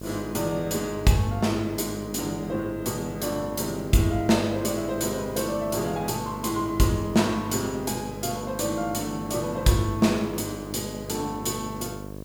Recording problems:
hum; 50 Hz, harmonics up to 1.2 kHz, SNR 12 dB
background hiss; slope +2 dB per octave, SNR 26 dB

